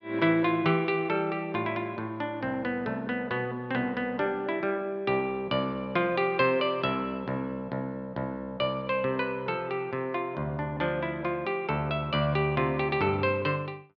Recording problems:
none

